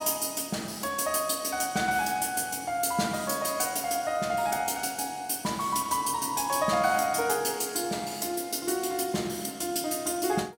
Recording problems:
none

